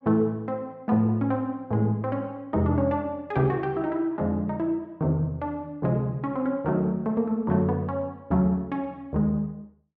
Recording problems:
none

